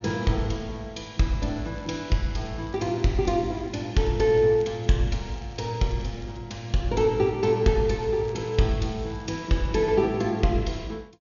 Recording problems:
treble cut off; nothing above 6.8 kHz
crackle; from 1.5 to 4 s, from 4 to 6.5 s and from 8 to 9.5 s; loose cable, SNR 29 dB

